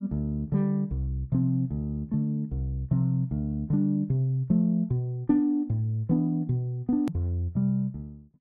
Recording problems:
click at an edit; at 7 s

